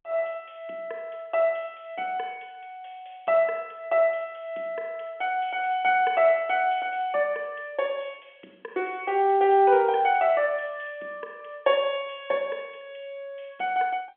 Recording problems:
telephone audio; 240 Hz to 3.4 kHz, G.711

